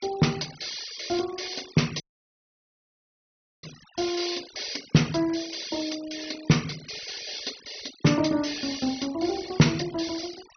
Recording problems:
low-pass filter; nothing above 6.1 kHz
denoising artefacts; signal-to-artefact ratio 16 dB
audio cutting out; at 2 s for 1.5 s

